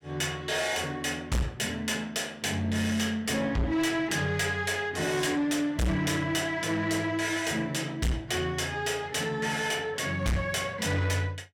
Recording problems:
distortion; soft clipping, signal-to-distortion ratio 7 dB

